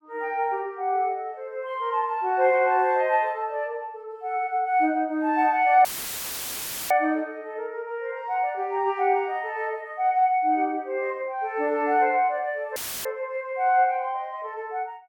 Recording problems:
audio cutting out; at 6 s for 1 s and at 13 s; filled with static

